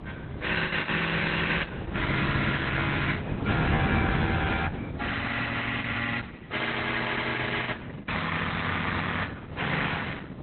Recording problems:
codec artefacts; Opus, then AAC, log-spectral distance 5 dB, nothing above 4 kHz
wind noise; below 330 Hz, SNR 6 dB
packet loss; 3% of the sound replaced, filled with the last packet

